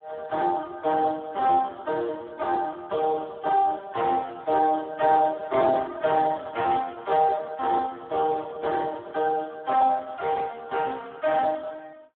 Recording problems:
telephone audio; 320 Hz to 2.1 kHz, Speex

